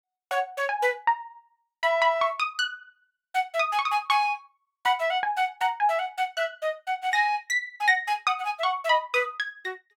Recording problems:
none

